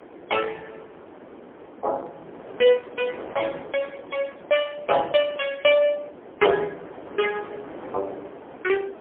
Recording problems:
phone line; 300 Hz to 3.3 kHz, AMR-NB, then MP3
wind on the microphone; below 780 Hz, SNR 17 dB

